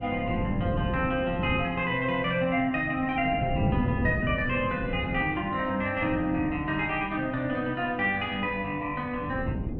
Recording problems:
wind on the microphone; below 240 Hz, SNR 7 dB

